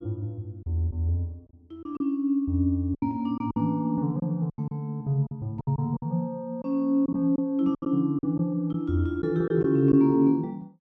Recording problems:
packet loss; 8% of the sound replaced, filled with silence

